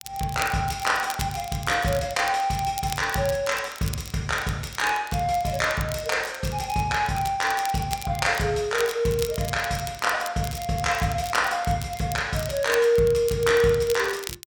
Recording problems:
crackling; vinyl, SNR 14 dB

